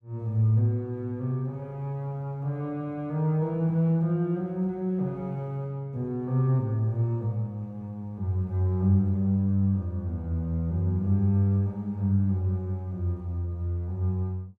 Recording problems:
none

